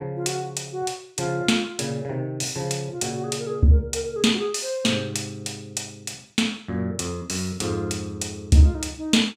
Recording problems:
none

